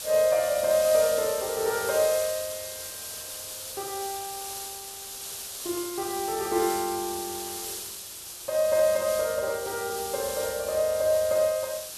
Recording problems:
background hiss; SNR 8 dB

